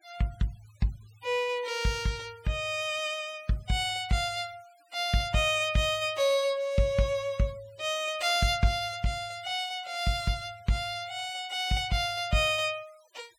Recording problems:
noise reduction artefacts; signal-to-artefact ratio 24 dB

